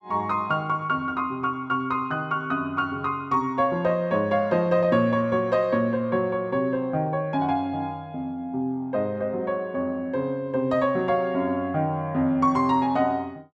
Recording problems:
none

